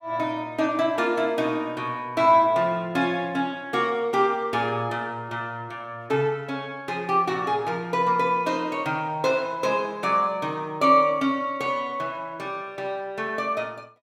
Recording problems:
none

